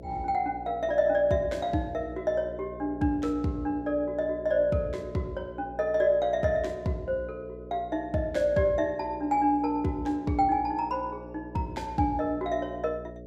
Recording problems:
hum; 60 Hz, harmonics up to 660 Hz, SNR 16 dB

